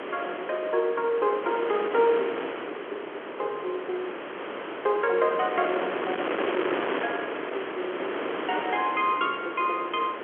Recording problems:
telephone audio; 280 Hz to 3.7 kHz, G.711
wind noise; below 1.6 kHz, SNR 4 dB

